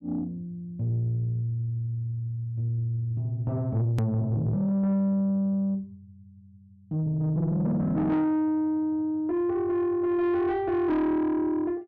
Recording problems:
distortion; soft clipping, signal-to-distortion ratio 11 dB
edit click; at 4 s

